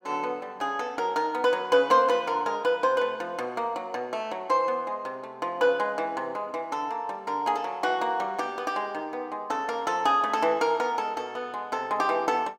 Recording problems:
none

